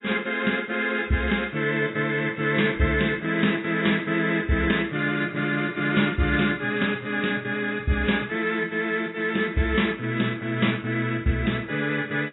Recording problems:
lossy codec; AAC, log-spectral distance 4 dB, nothing above 3.8 kHz

